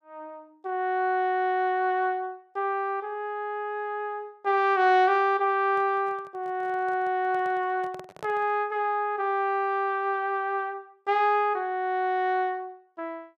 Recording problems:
microphone handling noise; from 5.5 to 8.5 s; peak -10 dB vs average level

